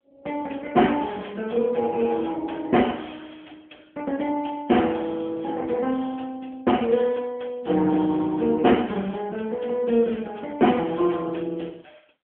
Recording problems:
phone line; 190 Hz to 3.2 kHz, AMR-NB

